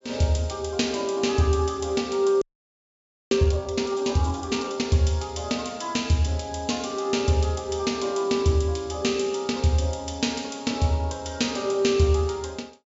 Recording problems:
treble cut off; nothing above 8 kHz
audio freezing; at 2.5 s for 1 s

